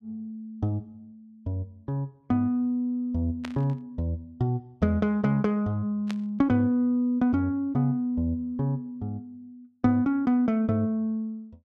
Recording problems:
burst of static; at 3.5 s and at 6 s; peak -7 dB vs average level

